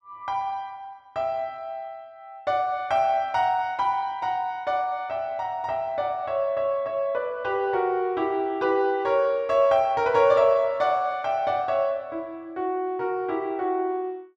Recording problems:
none

